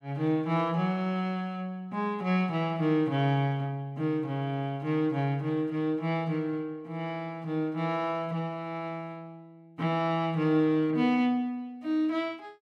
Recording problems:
none

